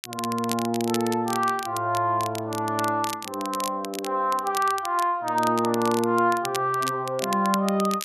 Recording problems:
crackling; vinyl, SNR 11 dB

